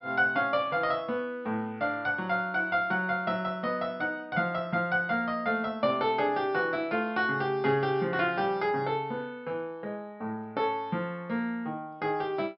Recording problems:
treble missing; nothing above 5.5 kHz

